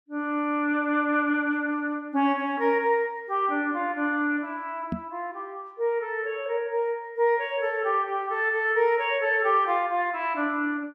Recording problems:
knock on the microphone; at 5 s; peak -1 dB vs average level

